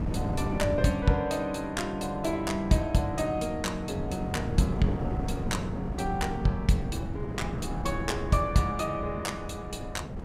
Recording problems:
wind noise; below 250 Hz, SNR 6 dB

